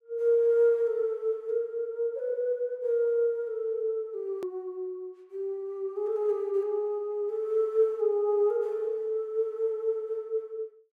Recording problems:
click at an edit; at 4.5 s

